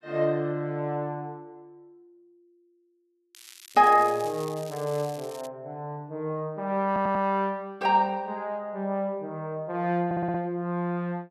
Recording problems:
crackle; from 3.5 to 5.5 s; loose cable, SNR 19 dB
audio stuttering; at 7 s and at 10 s

